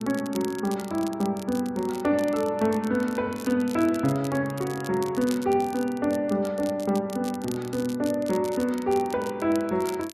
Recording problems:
crackle; vinyl, SNR 18 dB

